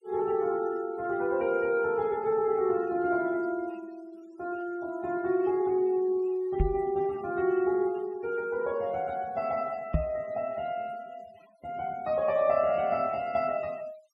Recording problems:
noise reduction artefacts; signal-to-artefact ratio 25 dB
microphone thump; at 6.5 s and at 10 s; peak +5 dB vs average level

